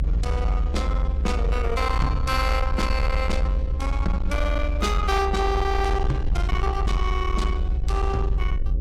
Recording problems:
distortion; soft clipping, signal-to-distortion ratio 10 dB
electrical hum; 60 Hz, harmonics up to 540 Hz, SNR 12 dB
rumble; below 68 Hz, strongest tone 46 Hz, SNR -1 dB

